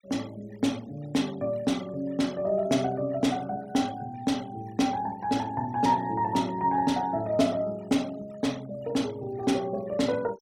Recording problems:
noise reduction artefacts; signal-to-artefact ratio 22 dB

